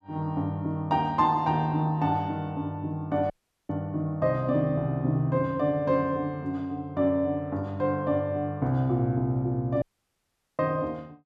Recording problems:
audio cutting out; at 3.5 s and at 10 s for 1 s
burst of static; at 3.5 s; peak -42 dB vs average level

